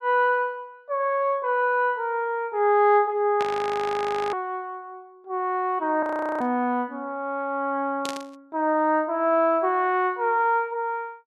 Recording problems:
static burst; at 3.5 s, at 6.5 s and at 8 s; peak -4 dB vs average level
audio freezing; at 3.5 s for 1 s and at 6 s

